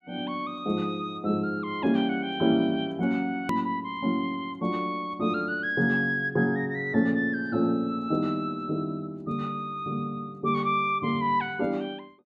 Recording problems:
click at an edit; at 3.5 s

